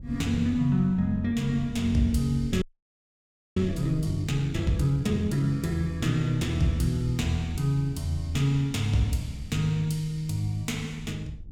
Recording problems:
wind on the microphone; below 98 Hz, SNR 16 dB
frozen audio; at 2.5 s for 1 s

